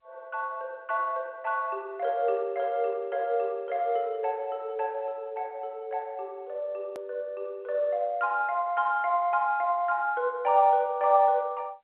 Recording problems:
telephone audio; 320 Hz to 3.3 kHz, G.711
hard cut with a click; at 7 s

